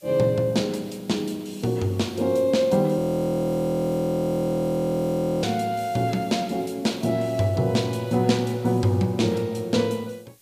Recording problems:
background hiss; SNR 27 dB
frozen audio; at 3 s for 2.5 s

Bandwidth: 15 kHz